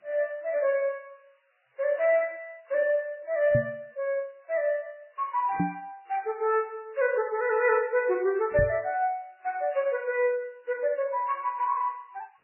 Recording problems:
lossy compression; MP3, log-spectral distance 7 dB, nothing above 2.7 kHz
hiss; SNR 41 dB
knock on the microphone; at 3.5 s, at 5.5 s and at 8.5 s; peak +4 dB vs average level

